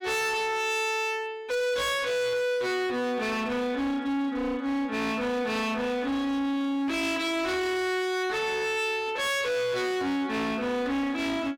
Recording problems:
distortion; hard clipping, signal-to-distortion ratio 7 dB

